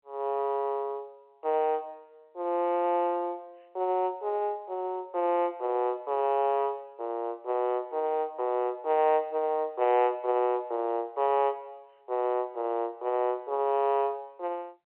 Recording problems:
telephone audio; 320 Hz to 3.1 kHz, G.711

